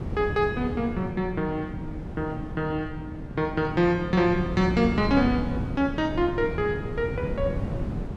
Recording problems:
wind noise; below 250 Hz, SNR 7 dB

